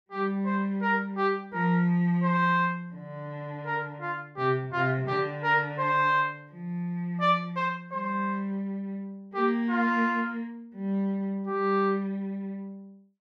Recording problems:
none

